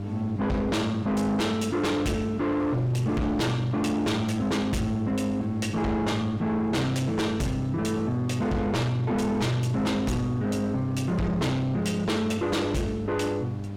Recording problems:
distorted audio; soft clipping, signal-to-distortion ratio 7 dB
electrical hum; 50 Hz, harmonics up to 800 Hz, SNR 9 dB
wind on the microphone; below 930 Hz, SNR 22 dB

